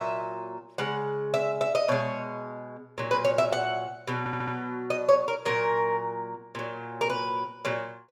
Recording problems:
stutter; at 4 s

